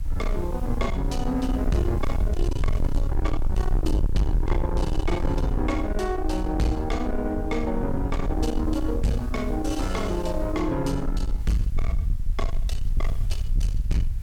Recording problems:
distorted audio; soft clipping, signal-to-distortion ratio 7 dB
background hiss; slope -2 dB per octave, SNR 27 dB
low-frequency rumble; below 68 Hz, SNR 1 dB

